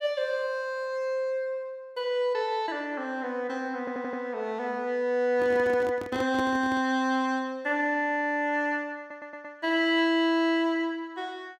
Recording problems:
stutter; at 4 s and at 9 s
microphone handling noise; from 5.5 to 7 s; peak -4 dB vs average level

